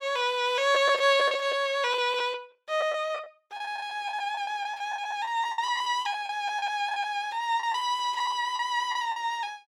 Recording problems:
lost packets; 11% of the sound replaced, filled with the last packet

